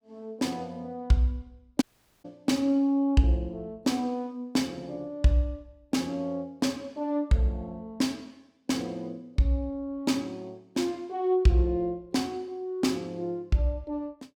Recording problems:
dropout; at 2 s

